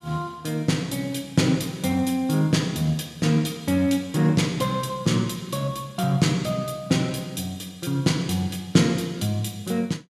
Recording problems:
none

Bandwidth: 14 kHz